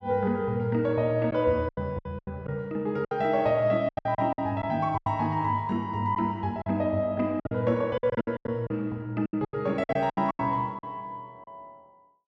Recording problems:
packet loss; 12% of the sound replaced, filled with silence

